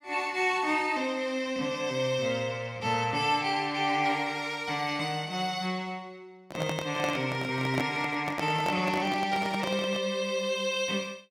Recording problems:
handling noise; from 6.5 to 10 s; peak +1 dB vs average level

